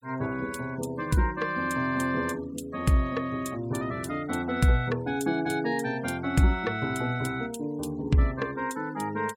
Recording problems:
denoising artefacts; signal-to-artefact ratio 25 dB

